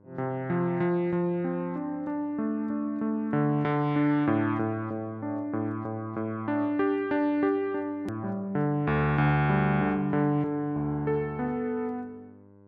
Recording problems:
electrical hum; 50 Hz, harmonics up to 1.1 kHz, SNR 26 dB
edit click; at 8 s

